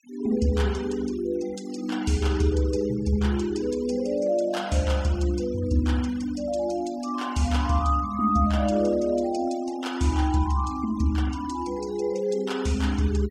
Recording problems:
denoising artefacts; signal-to-artefact ratio 21 dB

